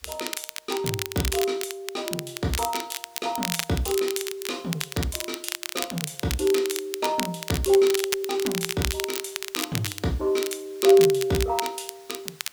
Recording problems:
hiss; slope +1 dB per octave, SNR 26 dB
crackling; vinyl, SNR 6 dB

